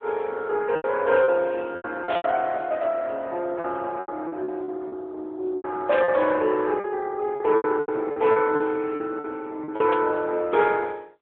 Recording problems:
telephone audio; 280 Hz to 3.4 kHz, AMR-NB
packet loss; 11% of the sound replaced, filled with repeated pitch periods
burst of static; at 2 s, at 6 s and at 10 s; peak -5 dB vs average level

